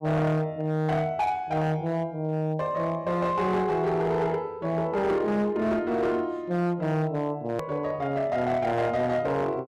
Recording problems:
distorted audio; hard clipping, signal-to-distortion ratio 11 dB
edit click; at 7.5 s

